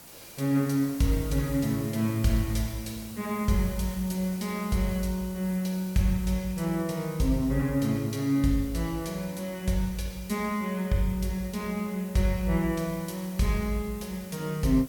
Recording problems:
hiss; slope -3 dB per octave, SNR 17 dB

